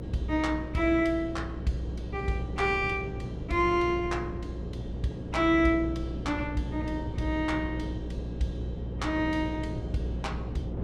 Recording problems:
hum; 60 Hz, harmonics up to 540 Hz, SNR 8 dB
wind on the microphone; below 370 Hz, SNR 10 dB

